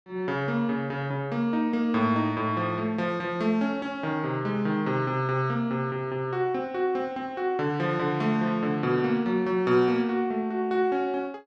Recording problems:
none

